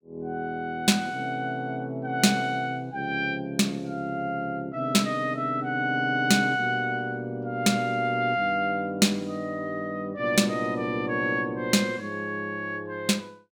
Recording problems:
none

